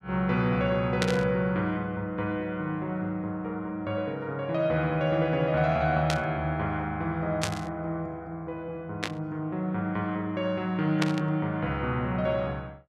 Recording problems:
burst of static; 5 times, first at 1 s; peak +4 dB vs average level

